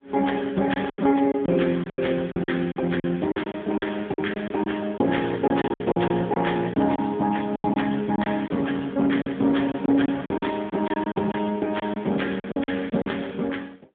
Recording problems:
phone line; 110 Hz to 3.5 kHz, AMR-NB, then MP3
lost packets; 11% of the sound replaced, filled with silence

